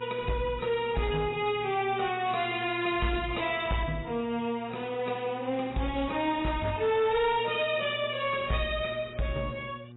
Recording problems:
lossy compression; AAC, log-spectral distance 5 dB, nothing above 3.8 kHz
distorted audio; hard clipping, signal-to-distortion ratio 11 dB
hum; 60 Hz, harmonics up to 1.2 kHz, SNR 19 dB

